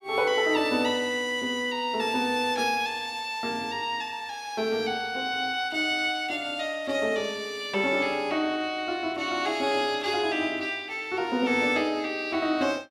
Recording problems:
none

